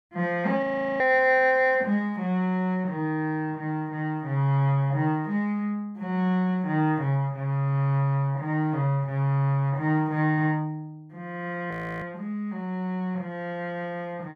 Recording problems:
audio freezing; at 0.5 s and at 12 s

